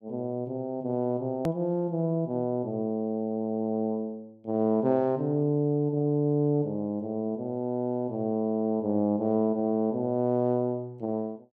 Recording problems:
hard cut with a click; at 1.5 s

